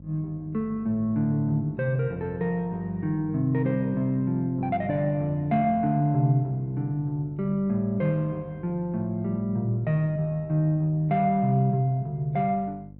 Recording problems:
electrical hum; 50 Hz, harmonics up to 550 Hz, SNR 21 dB

